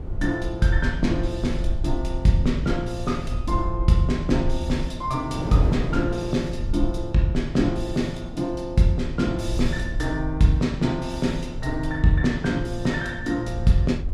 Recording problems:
rumble; below 62 Hz, SNR 8 dB
wind on the microphone; below 420 Hz, SNR 15 dB

